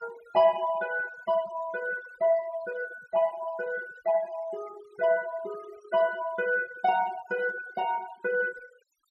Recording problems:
denoising artefacts; signal-to-artefact ratio 20 dB

